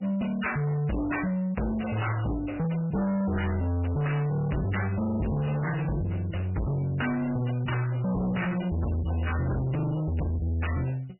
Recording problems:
lossy compression; MP3, log-spectral distance 5 dB, nothing above 2.9 kHz
distorted audio; soft clipping, signal-to-distortion ratio 5 dB

